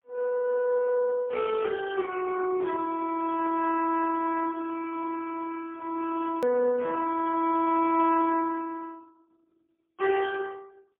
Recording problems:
phone line; 260 Hz to 2.7 kHz, AMR-NB, then MP3
click at an edit; at 6.5 s

